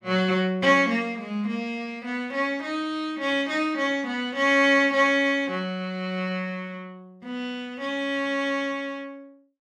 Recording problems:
none

